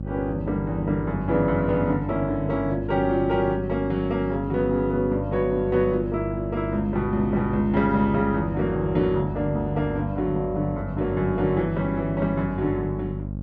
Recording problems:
hum; 50 Hz, harmonics up to 600 Hz, SNR 7 dB

